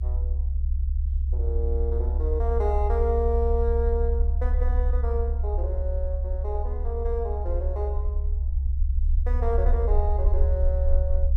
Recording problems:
low-frequency rumble; below 68 Hz, SNR -5 dB

